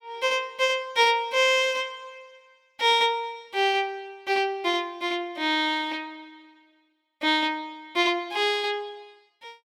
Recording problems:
none

